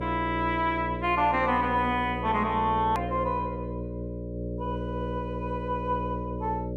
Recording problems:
hum; 60 Hz, harmonics up to 600 Hz, SNR 6 dB
click at an edit; at 3 s

